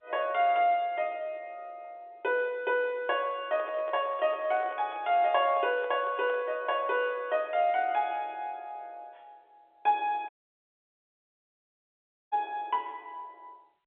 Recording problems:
telephone audio; 300 Hz to 3.7 kHz, G.711
handling noise; from 3.5 to 6.5 s; peak -10 dB vs average level
audio cutting out; at 10 s for 2 s

